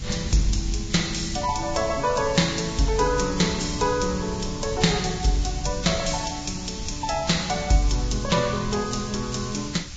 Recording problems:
lossy compression; Vorbis, log-spectral distance 11 dB, nothing above 7.6 kHz
background hiss; slope +3 dB per octave, SNR 14 dB
wind noise; below 130 Hz, SNR 12 dB

